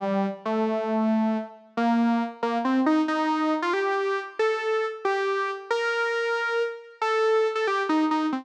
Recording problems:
none

